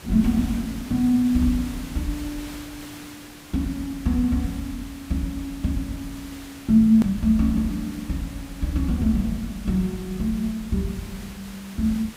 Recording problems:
hiss; slope -2 dB per octave, SNR 17 dB
edit click; at 7 s

